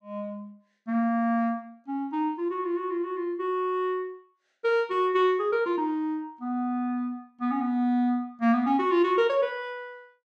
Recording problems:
none

